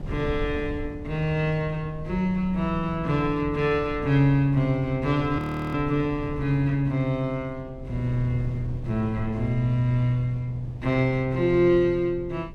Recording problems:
wind on the microphone; below 140 Hz, SNR 13 dB
frozen audio; at 5.5 s

